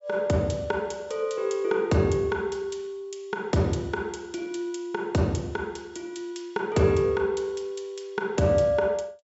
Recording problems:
treble cut off; nothing above 8 kHz

